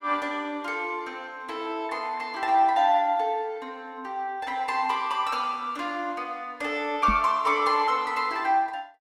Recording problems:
knock on the microphone; at 7 s; peak 0 dB vs average level

